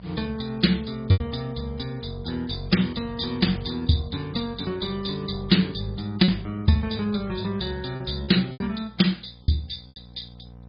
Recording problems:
codec artefacts; MP3, then MP2, log-spectral distance 7 dB, nothing above 4.9 kHz
hum; 60 Hz, harmonics up to 1 kHz, SNR 22 dB
lost packets; 3% of the sound replaced, filled with repeated pitch periods

